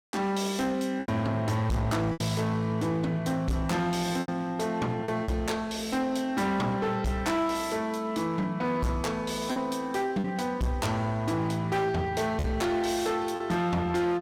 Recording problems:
distortion; hard clipping, signal-to-distortion ratio 10 dB
packet loss; 3% of the sound replaced, filled with repeated pitch periods

